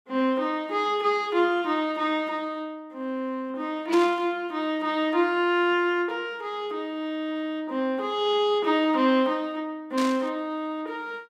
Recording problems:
burst of static; at 4 s and at 10 s; peak -4 dB vs average level

